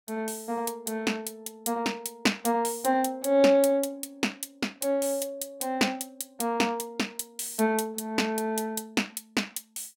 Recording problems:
none

